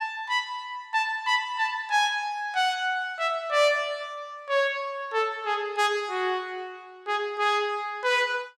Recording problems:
none

